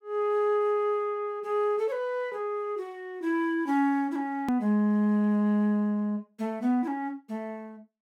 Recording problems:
edit click; at 4.5 s

